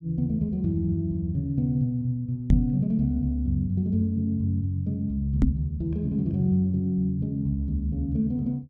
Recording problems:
microphone bump; at 2.5 s and at 5.5 s; peak +8 dB vs average level

